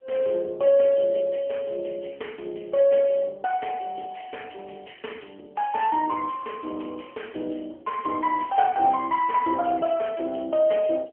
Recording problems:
phone line; 280 Hz to 3.1 kHz, AMR-NB

